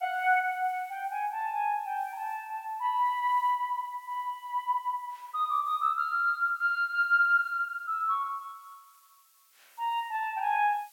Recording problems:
background hiss; slope +4 dB per octave, SNR 30 dB

